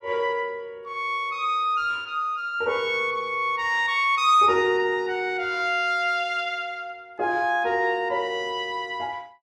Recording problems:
none

